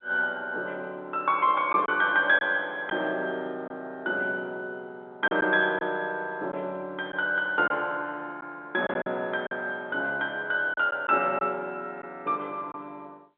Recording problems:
telephone audio; 280 Hz to 3.7 kHz, G.711
packet loss; 3% of the sound replaced, filled with silence

